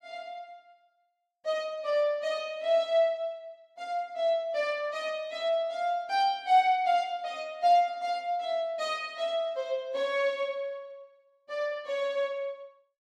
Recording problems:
none

